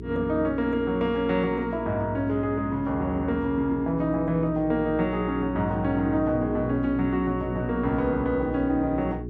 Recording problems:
electrical hum; 60 Hz, harmonics up to 420 Hz, SNR 10 dB

